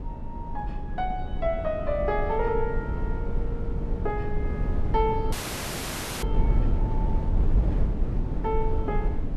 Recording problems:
wind on the microphone; below 90 Hz, SNR -1 dB
frozen audio; at 5.5 s for 1 s

